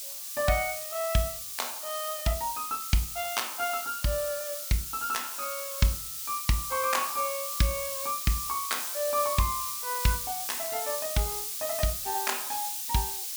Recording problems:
hiss; SNR 2 dB

